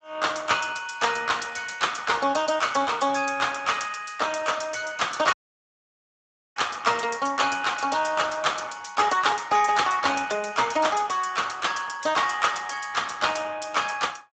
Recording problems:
lossy compression; Speex, log-spectral distance 8 dB, nothing above 7.6 kHz
dropout; at 5.5 s for 1 s

